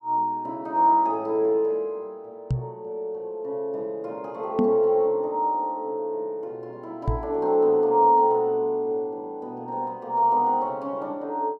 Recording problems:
microphone thump; at 2.5 s, at 4.5 s and at 7 s; peak +3 dB vs average level

